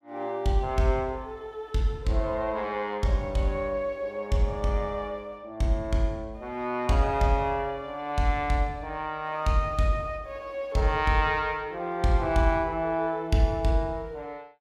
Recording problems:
none

